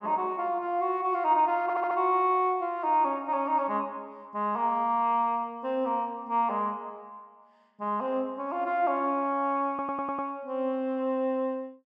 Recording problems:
audio stuttering; at 1.5 s and at 9.5 s

